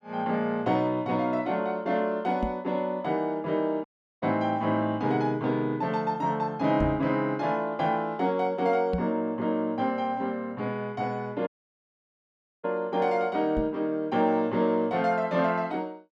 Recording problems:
microphone thump; 4 times, first at 2.5 s; peak 0 dB vs average level
dropout; at 4 s and at 11 s for 1 s

